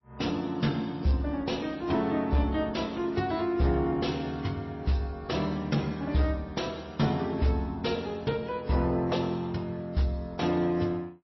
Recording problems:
codec artefacts; AAC, then MP3, log-spectral distance 3 dB, nothing above 5.8 kHz
distorted audio; soft clipping, signal-to-distortion ratio 12 dB

